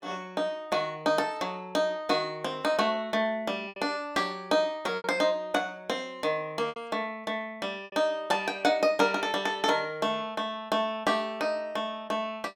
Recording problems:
packet loss; 3% of the sound replaced, filled with repeated pitch periods

